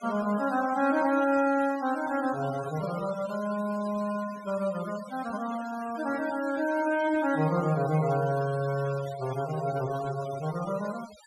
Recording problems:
noise reduction artefacts; signal-to-artefact ratio 16 dB

